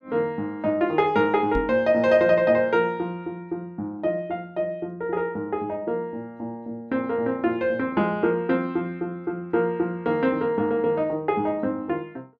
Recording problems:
knock on the microphone; at 1.5 s; peak -1 dB vs average level

